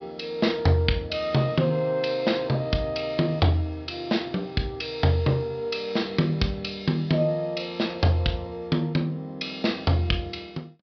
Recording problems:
treble cut off; nothing above 5.5 kHz

